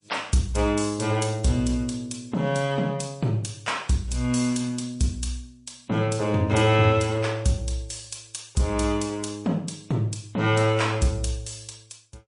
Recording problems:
lossy compression; MP3, log-spectral distance 4 dB, nothing above 10.4 kHz

